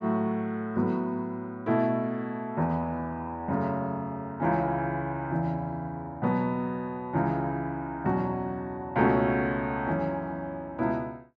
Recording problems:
none

